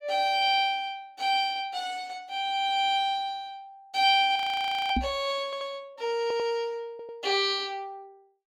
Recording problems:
frozen audio; at 4.5 s for 0.5 s
microphone thump; at 5 s; peak +2 dB vs average level
audio stuttering; at 5.5 s, at 6 s and at 7 s

